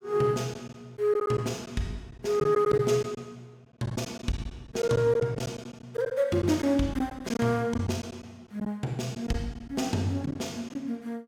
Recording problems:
packet loss; 7% of the sound replaced, filled with silence

